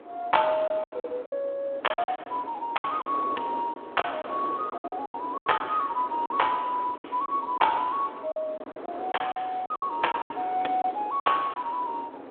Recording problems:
phone line; 240 Hz to 3.5 kHz, Speex
wind noise; below 800 Hz, SNR 13 dB
lost packets; 12% of the sound replaced, filled with silence

